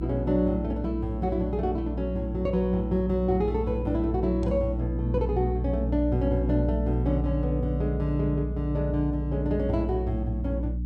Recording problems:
hum; 60 Hz, harmonics up to 300 Hz, SNR 3 dB

